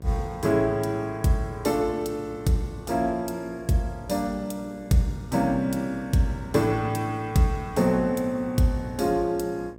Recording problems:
hum; 60 Hz, harmonics up to 1.1 kHz, SNR 21 dB

